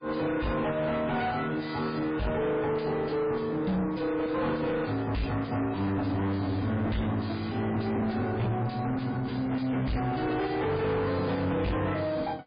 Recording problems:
lossy compression; MP3, log-spectral distance 4 dB, nothing above 4.1 kHz
distorted audio; soft clipping, signal-to-distortion ratio 4 dB

